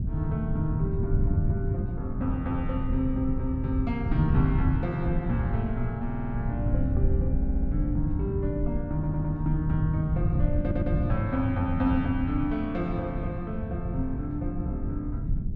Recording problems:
low-frequency rumble; below 130 Hz, SNR 0 dB
stutter; 4 times, first at 6 s

